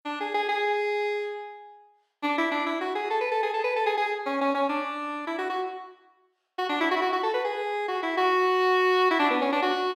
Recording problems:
none

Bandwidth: 16 kHz